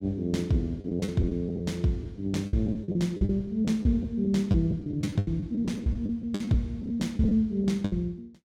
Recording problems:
packet loss; 14% of the sound replaced, filled with the last packet

